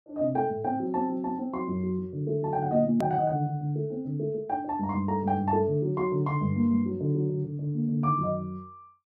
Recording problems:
hard cut with a click; at 3 s

